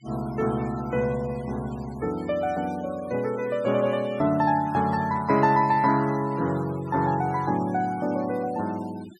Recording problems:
noise reduction artefacts; signal-to-artefact ratio 20 dB

